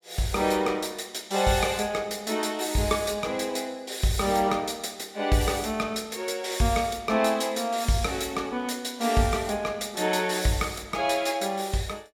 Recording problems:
none

